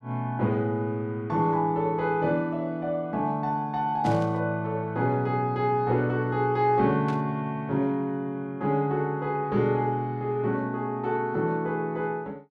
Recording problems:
static burst; at 4 s and at 7 s; peak -11 dB vs average level

